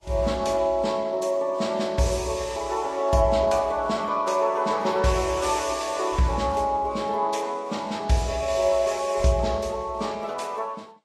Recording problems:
codec artefacts; Vorbis, then Vorbis, log-spectral distance 3 dB, nothing above 12.3 kHz

